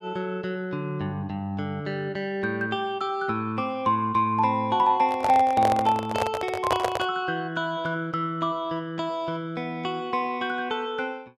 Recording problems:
microphone handling noise; from 5 to 7 s; peak +4 dB vs average level

